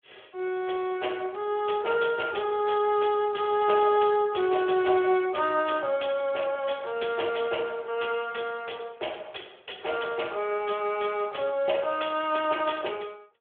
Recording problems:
telephone audio; 320 Hz to 3.5 kHz, Speex

